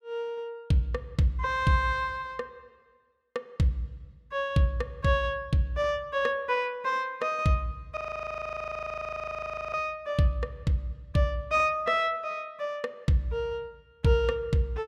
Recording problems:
audio freezing; at 8 s for 2 s

